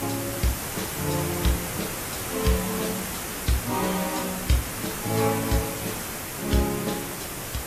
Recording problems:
codec artefacts; AAC, log-spectral distance 15 dB, nothing above 14.7 kHz
background hiss; slope -3 dB per octave, SNR 1 dB

